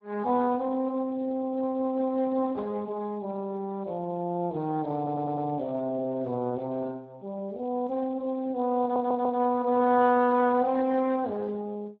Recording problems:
lossy compression; Speex, log-spectral distance 2 dB
stutter; at 5 s and at 9 s

